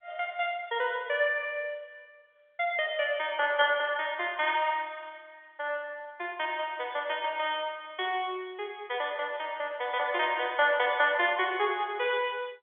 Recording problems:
phone line; 320 Hz to 3.5 kHz, G.711

